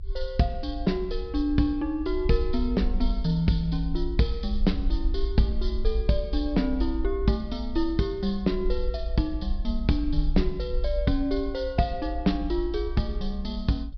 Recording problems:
treble missing; nothing above 5.5 kHz
rumble; below 54 Hz, SNR 5 dB

